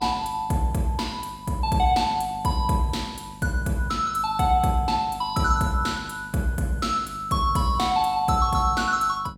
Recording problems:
hum; 50 Hz, harmonics up to 800 Hz, SNR 19 dB

